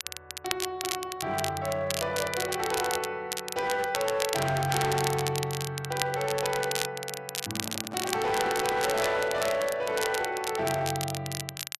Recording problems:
distortion; hard clipping, signal-to-distortion ratio 12 dB
crackle; vinyl, SNR 5 dB
handling noise; from 7.5 to 10 s; peak -6 dB vs average level

